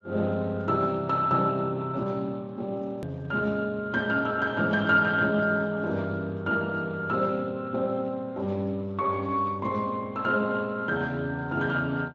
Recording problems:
lossy codec; Speex, log-spectral distance 2 dB
edit click; at 3 s

